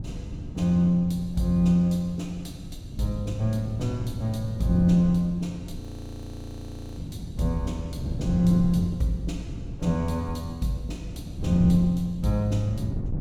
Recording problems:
wind on the microphone; below 170 Hz, SNR 10 dB
frozen audio; at 6 s for 1 s

